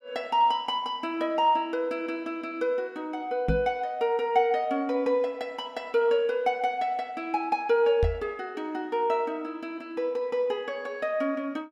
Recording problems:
microphone thump; at 3.5 s and at 8 s; peak +4 dB vs average level

